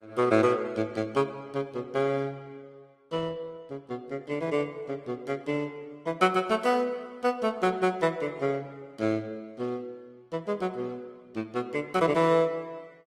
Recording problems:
lossy codec; Opus, then Opus, log-spectral distance 2 dB, nothing above 15.5 kHz

